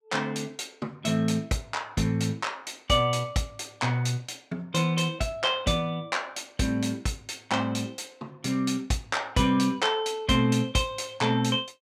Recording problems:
none

